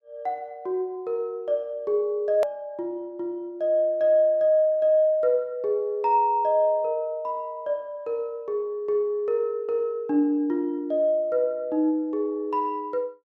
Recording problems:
edit click; at 2.5 s

